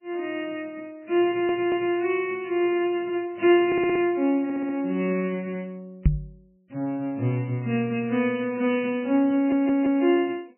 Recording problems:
lossy compression; MP3, log-spectral distance 2 dB, nothing above 2.4 kHz
stutter; 4 times, first at 1.5 s
knock on the microphone; at 6 s; peak +8 dB vs average level

